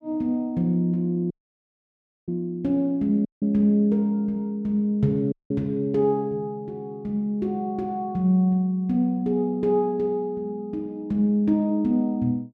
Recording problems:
dropout; at 1.5 s for 1 s, at 3.5 s and at 5.5 s

